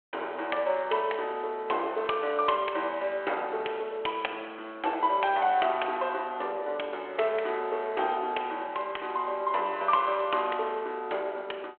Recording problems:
phone line; 320 Hz to 3.3 kHz, G.726

